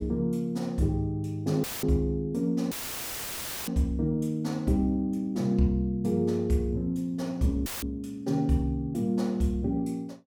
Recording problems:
dropout; at 1.5 s, at 2.5 s for 1 s and at 7.5 s; filled with static

